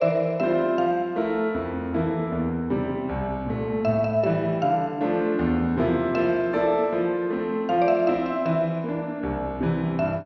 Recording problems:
none

